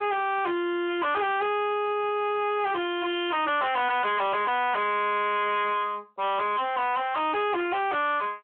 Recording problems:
telephone audio; 260 Hz to 3.4 kHz, Speex
distortion; soft clipping, signal-to-distortion ratio 5 dB

